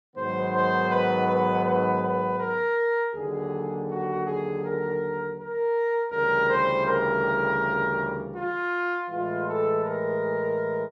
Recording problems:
none

